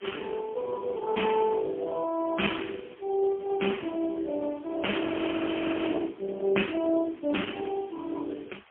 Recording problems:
telephone audio; 240 Hz to 3.3 kHz, AMR-NB, then MP3
background hiss; SNR 27 dB
frozen audio; at 5 s for 1 s

